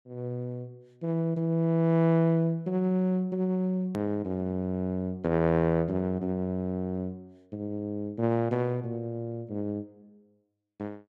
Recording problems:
edit click; at 4 s

